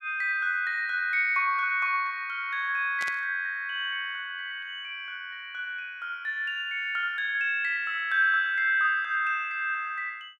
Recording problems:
burst of static; at 3 s; peak -7 dB vs average level

